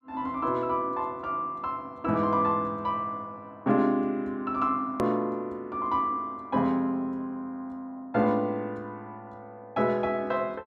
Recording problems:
hard cut with a click; at 5 s

